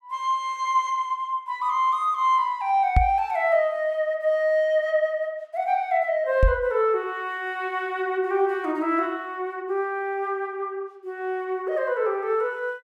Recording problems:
microphone bump; at 3 s and at 6.5 s; peak +8 dB vs average level

